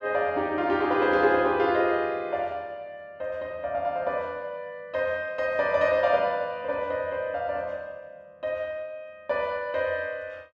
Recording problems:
none

